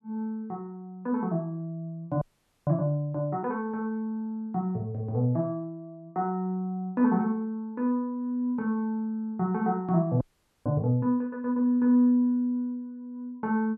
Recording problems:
audio freezing; at 2 s and at 10 s

